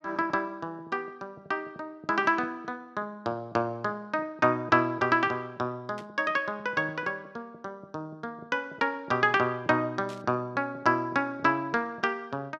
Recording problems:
static burst; at 6 s and at 10 s; peak -14 dB vs average level

